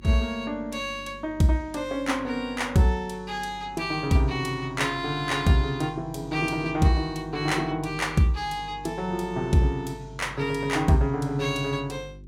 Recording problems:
electrical hum; 50 Hz, harmonics up to 400 Hz, SNR 20 dB

